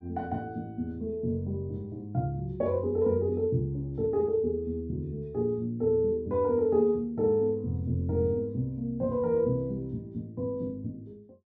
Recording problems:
none

